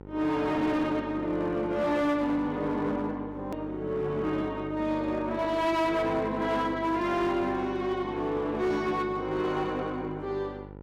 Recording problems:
distortion; hard clipping, uneven, signal-to-distortion ratio 11 dB
hum; 50 Hz, harmonics up to 1.4 kHz, SNR 15 dB
click at an edit; at 3.5 s

